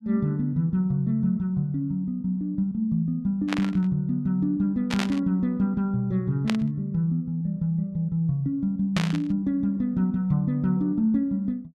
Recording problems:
static burst; 4 times, first at 3.5 s; peak 0 dB vs average level

